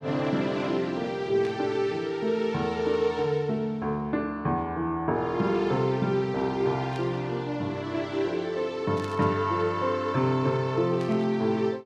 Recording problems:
static burst; 4 times, first at 1.5 s; peak -12 dB vs average level

